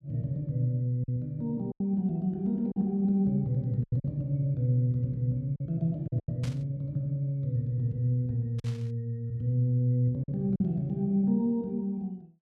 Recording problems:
packet loss; 5% of the sound replaced, filled with silence
burst of static; at 6.5 s and at 8.5 s; peak -10 dB vs average level

